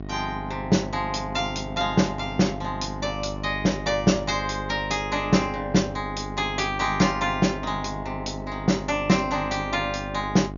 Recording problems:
low-pass filter; nothing above 7 kHz
hum; 50 Hz, harmonics up to 1.1 kHz, SNR 10 dB

